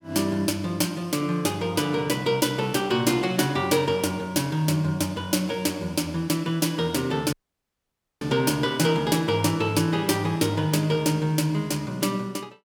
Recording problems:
dropout; at 7.5 s for 1 s

